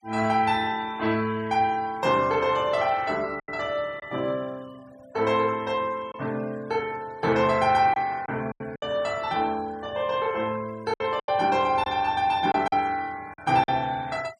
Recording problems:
denoising artefacts; signal-to-artefact ratio 24 dB
packet loss; 4% of the sound replaced, filled with silence

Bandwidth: 14 kHz